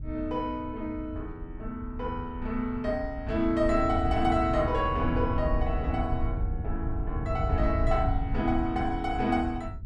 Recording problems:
wind on the microphone; below 94 Hz, SNR 4 dB

